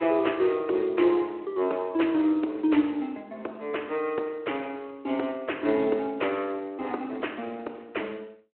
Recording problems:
telephone audio; 280 Hz to 3.2 kHz, Speex

